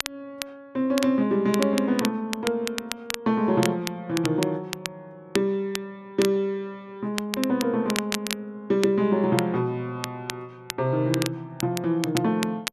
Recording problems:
crackling; vinyl, SNR 9 dB

